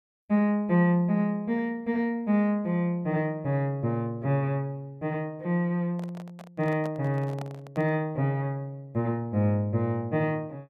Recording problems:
microphone handling noise; from 6 to 8 s; peak -9 dB vs average level

